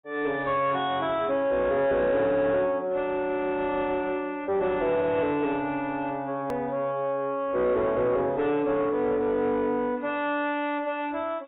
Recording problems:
lossy codec; AAC, log-spectral distance 2 dB, nothing above 3.3 kHz
distortion; soft clipping, signal-to-distortion ratio 11 dB
hard cut with a click; at 6.5 s

